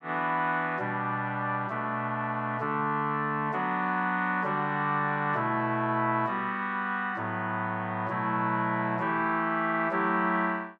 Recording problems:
none

